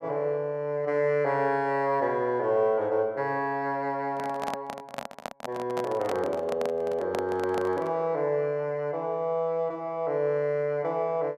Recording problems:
handling noise; from 4 to 8 s; peak -2 dB vs average level

